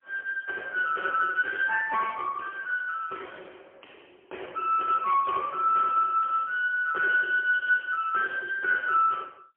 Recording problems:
telephone audio; 320 Hz to 3 kHz, AMR-NB, then MP3

